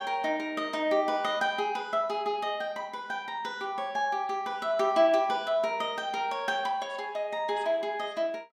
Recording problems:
none

